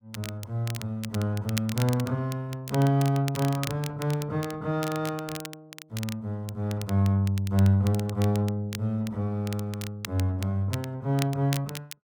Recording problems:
crackling; vinyl, SNR 13 dB

